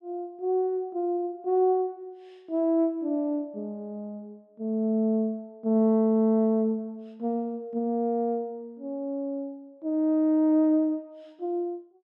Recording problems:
none

